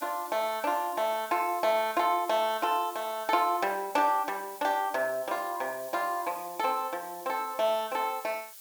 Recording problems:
hiss; slope +3 dB per octave, SNR 16 dB

